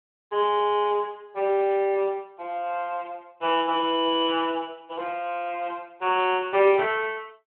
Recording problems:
phone line; 340 Hz to 3.3 kHz, Speex

